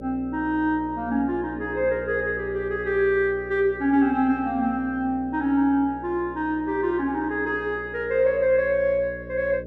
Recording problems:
hum; 60 Hz, harmonics up to 600 Hz, SNR 16 dB

